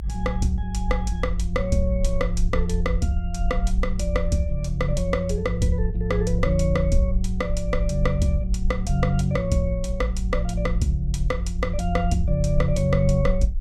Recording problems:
rumble; below 56 Hz, SNR 3 dB

